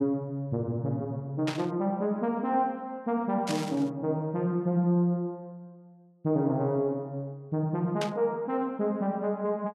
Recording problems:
burst of static; at 1.5 s, at 3.5 s and at 8 s; peak -1 dB vs average level

